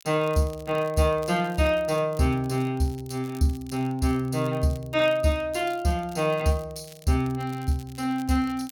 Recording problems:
crackling; vinyl, SNR 25 dB

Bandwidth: 17.5 kHz